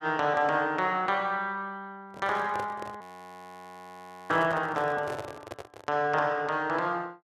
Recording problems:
handling noise; from 2 to 6 s; peak -6 dB vs average level
frozen audio; at 3 s for 1.5 s

